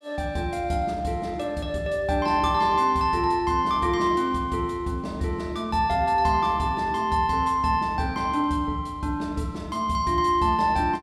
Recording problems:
none

